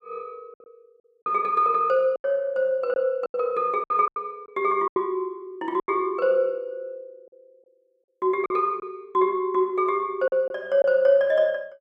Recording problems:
lost packets; 7% of the sound replaced, filled with silence

